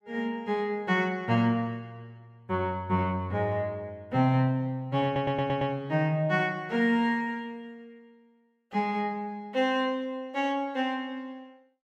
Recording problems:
audio stuttering; at 5 s

